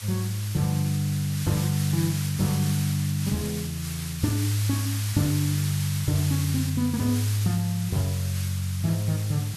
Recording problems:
background hiss; slope +2 dB per octave, SNR 9 dB

